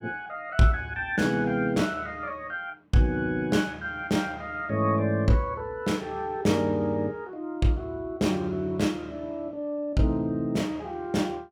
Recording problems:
none

